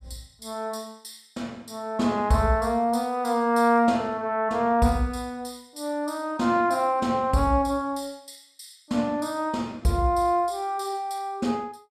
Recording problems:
none

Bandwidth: 15 kHz